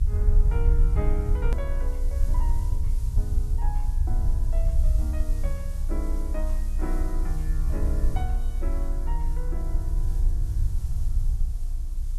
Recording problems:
hiss; SNR 13 dB
low-frequency rumble; below 60 Hz, strongest tone 28 Hz, SNR -11 dB
edit click; at 1.5 s

